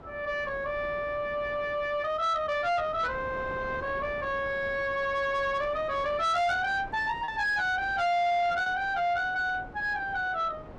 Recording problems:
distortion; soft clipping, signal-to-distortion ratio 11 dB
wind noise; below 760 Hz, SNR 17 dB
lost packets; 1% of the sound replaced, filled with repeated pitch periods

